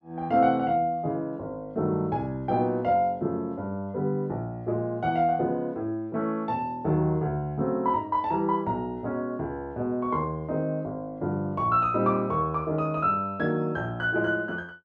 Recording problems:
none

